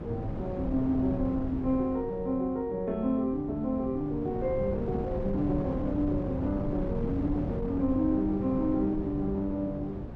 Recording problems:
wind on the microphone; below 310 Hz, SNR 7 dB

